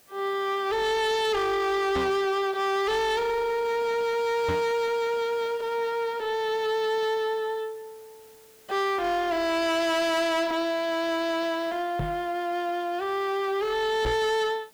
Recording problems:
distorted audio; soft clipping, signal-to-distortion ratio 7 dB
background hiss; slope -2 dB per octave, SNR 28 dB
microphone bump; 4 times, first at 2 s; peak +1 dB vs average level

